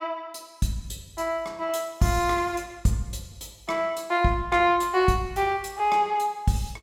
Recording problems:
none

